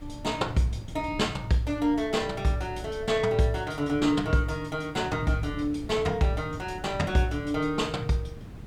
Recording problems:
hiss; slope -5 dB per octave, SNR 27 dB
wind on the microphone; below 160 Hz, SNR 15 dB

